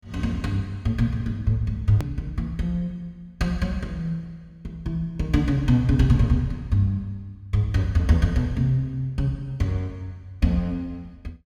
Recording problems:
hard cut with a click; at 2 s

